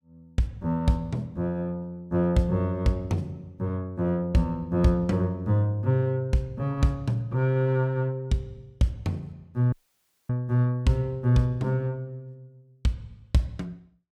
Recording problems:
audio cutting out; at 9.5 s for 0.5 s

